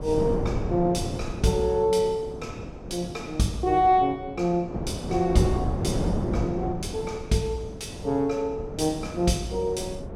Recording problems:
wind noise; below 380 Hz, SNR 7 dB

